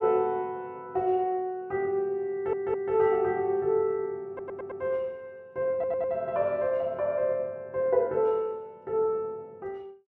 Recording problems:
audio stuttering; at 2.5 s, at 4.5 s and at 5.5 s

